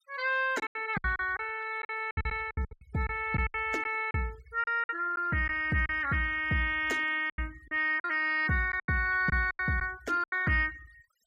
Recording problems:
noise reduction artefacts; signal-to-artefact ratio 24 dB
packet loss; 12% of the sound replaced, filled with silence

